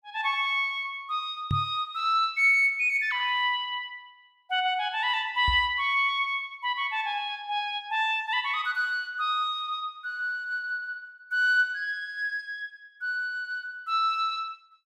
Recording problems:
knock on the microphone; at 1.5 s and at 5.5 s; peak +1 dB vs average level

